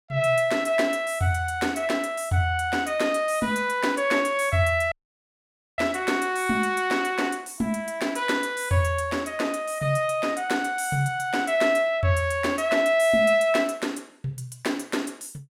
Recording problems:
dropout; at 5 s for 1 s

